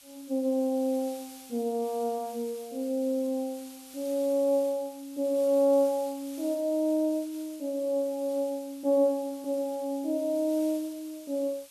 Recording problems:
hiss; slope +3 dB per octave, SNR 19 dB

